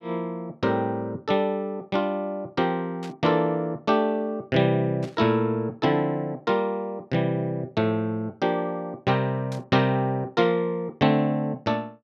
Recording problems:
burst of static; at 3 s, at 5 s and at 9.5 s; peak -13 dB vs average level

